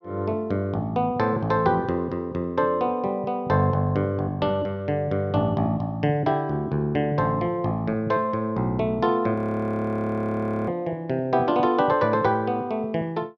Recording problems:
frozen audio; at 9.5 s for 1.5 s

